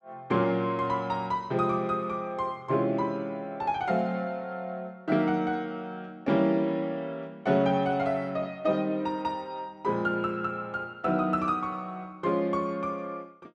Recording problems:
none

